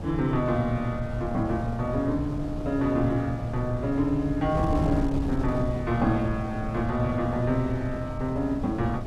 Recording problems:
wind on the microphone; below 220 Hz, SNR 7 dB

